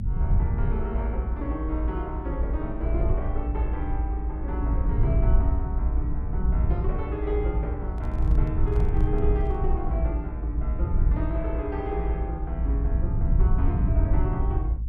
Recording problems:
rumble; below 78 Hz, SNR -7 dB
microphone handling noise; from 8 to 9.5 s; peak -7 dB vs average level

